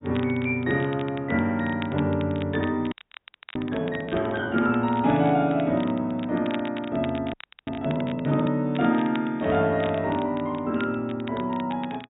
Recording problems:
low-pass filter; nothing above 4 kHz
crackling; vinyl, SNR 18 dB
audio freezing; at 3 s for 0.5 s and at 7.5 s

